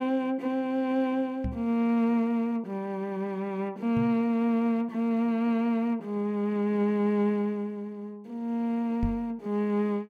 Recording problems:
microphone bump; at 1.5 s, at 4 s and at 9 s; peak 0 dB vs average level

